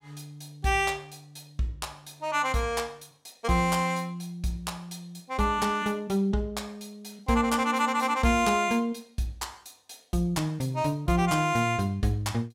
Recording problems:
none

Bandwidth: 16 kHz